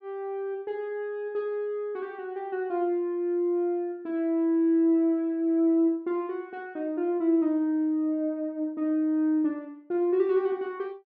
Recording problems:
none

